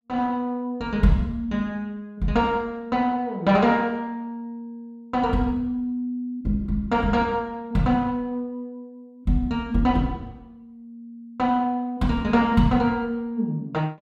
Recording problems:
none

